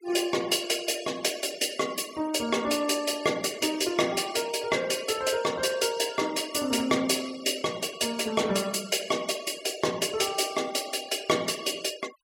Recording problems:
denoising artefacts; signal-to-artefact ratio 18 dB

